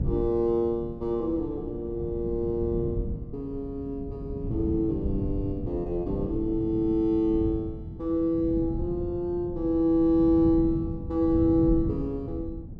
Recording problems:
wind on the microphone; below 180 Hz, SNR 8 dB

